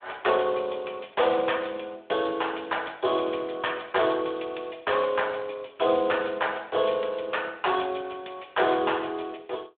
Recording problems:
telephone audio; 280 Hz to 3.6 kHz, Speex

